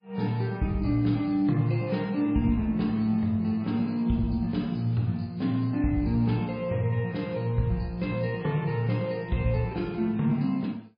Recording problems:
codec artefacts; MP3, log-spectral distance 2 dB, nothing above 11.3 kHz

